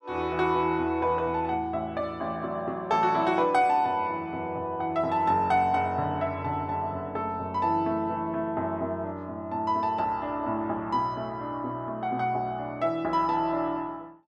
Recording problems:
none

